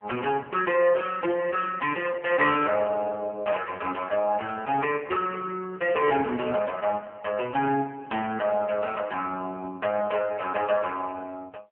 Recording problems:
telephone audio; 280 Hz to 3.1 kHz, AMR-NB

